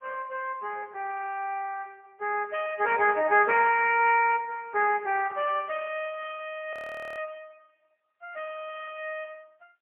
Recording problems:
telephone audio; 320 Hz to 2.9 kHz, AMR-NB, then MP3
audio freezing; at 6.5 s

